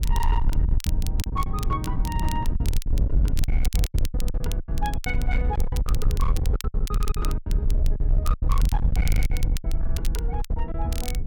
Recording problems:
distorted audio; hard clipping, signal-to-distortion ratio 8 dB
rumble; below 58 Hz, SNR -7 dB
wind noise; below 160 Hz, SNR 0 dB
crackle; vinyl, SNR 7 dB
lost packets; 15% of the sound replaced, filled with silence

